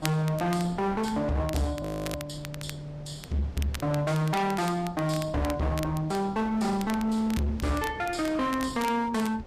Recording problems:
lossy compression; Vorbis, log-spectral distance 2 dB, nothing above 13.1 kHz
distortion; hard clipping, signal-to-distortion ratio 7 dB
wind noise; below 500 Hz, SNR 17 dB
crackle; vinyl, SNR 15 dB
frozen audio; at 2 s

